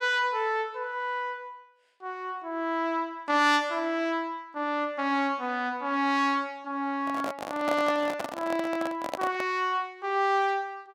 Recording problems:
microphone handling noise; from 7 to 9.5 s; peak 0 dB vs average level

